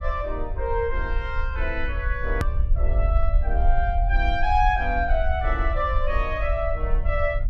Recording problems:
low-frequency rumble; below 56 Hz, SNR 0 dB
click at an edit; at 2.5 s

